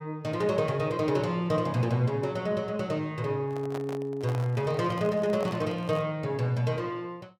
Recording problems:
microphone handling noise; from 3.5 to 6 s; peak -5 dB vs average level

